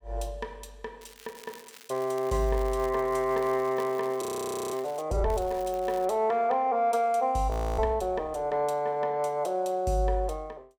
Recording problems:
crackle; from 1 to 5 s and at 5.5 s; loose cable, SNR 22 dB
frozen audio; at 4 s for 0.5 s and at 7.5 s

